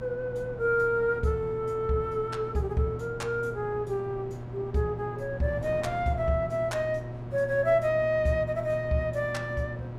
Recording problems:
electrical hum; 60 Hz, harmonics up to 1.3 kHz, SNR 11 dB
wind noise; below 490 Hz, SNR 16 dB

